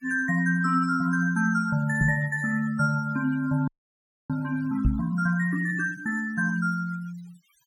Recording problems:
noise reduction artefacts; signal-to-artefact ratio 22 dB
microphone bump; at 2 s and at 5 s; peak +6 dB vs average level
audio freezing; at 3.5 s for 0.5 s

